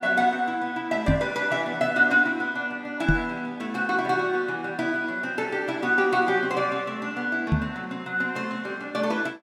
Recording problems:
microphone bump; at 1 s, at 3 s and at 7.5 s; peak +7 dB vs average level

